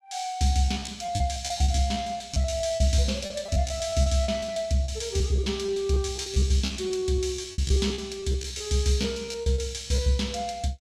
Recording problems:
lost packets; 17% of the sound replaced, filled with repeated pitch periods

